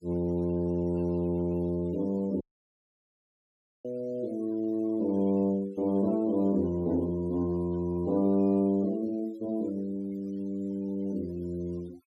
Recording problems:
denoising artefacts; signal-to-artefact ratio 23 dB
dropout; at 2.5 s for 1.5 s

